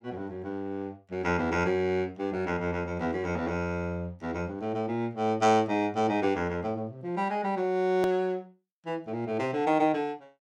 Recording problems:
edit click; at 8 s

